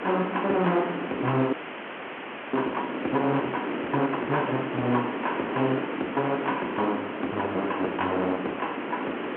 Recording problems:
phone line; 220 Hz to 3.8 kHz, G.711
background hiss; SNR 3 dB
frozen audio; at 1.5 s for 1 s

